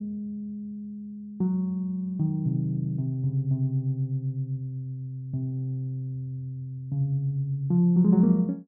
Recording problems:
none

